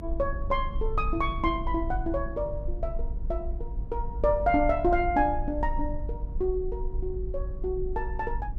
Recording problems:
low-frequency rumble; below 54 Hz, strongest tone 24 Hz, SNR 5 dB

